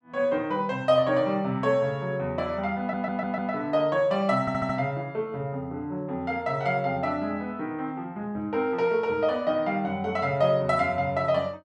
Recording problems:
audio stuttering; at 3 s and at 4.5 s

